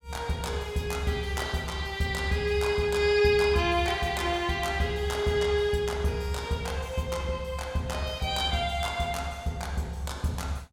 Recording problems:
none

